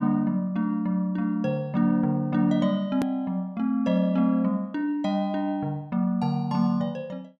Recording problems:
hard cut with a click; at 3 s

